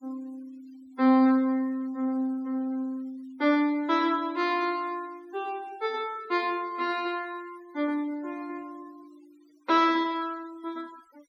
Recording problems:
denoising artefacts; signal-to-artefact ratio 26 dB

